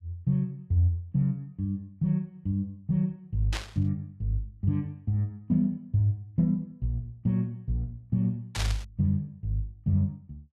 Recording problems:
burst of static; at 3.5 s and at 8.5 s; peak 0 dB vs average level

